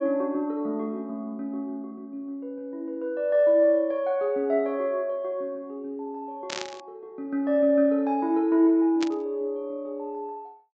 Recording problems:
low-pass filter; nothing above 8 kHz
static burst; at 6.5 s and at 9 s; peak -2 dB vs average level

